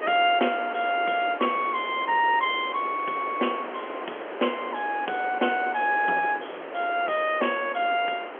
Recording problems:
telephone audio; 280 Hz to 3.2 kHz, G.711
background hiss; SNR 11 dB

